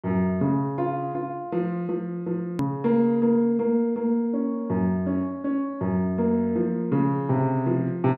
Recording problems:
hard cut with a click; at 2.5 s

